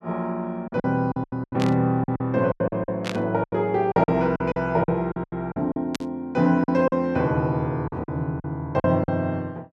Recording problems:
lost packets; 14% of the sound replaced, filled with silence
burst of static; at 1.5 s, at 3 s and at 6 s; peak -2 dB vs average level

